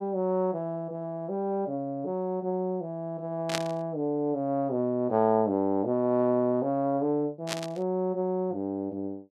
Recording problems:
static burst; at 3.5 s and at 7.5 s; peak +3 dB vs average level

